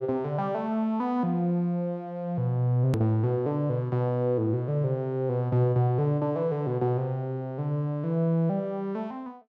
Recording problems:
edit click; at 3 s

